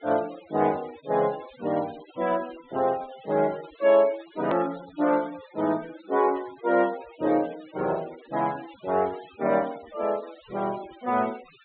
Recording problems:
treble missing; nothing above 4 kHz
noise reduction artefacts; signal-to-artefact ratio 20 dB
edit click; at 4.5 s

